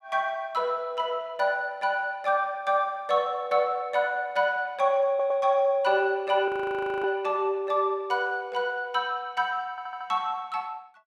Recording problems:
stutter; at 5 s and at 9.5 s
frozen audio; at 6.5 s for 0.5 s

